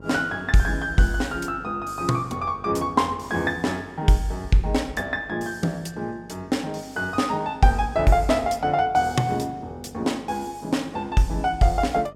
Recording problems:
electrical hum; 50 Hz, harmonics up to 1.1 kHz, SNR 23 dB

